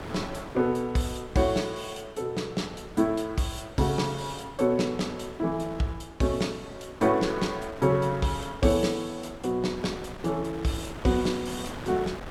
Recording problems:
wind noise; below 1.2 kHz, SNR 14 dB

